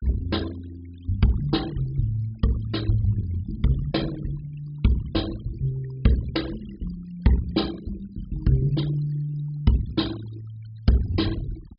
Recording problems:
low-pass filter; nothing above 5.5 kHz
denoising artefacts; signal-to-artefact ratio 19 dB

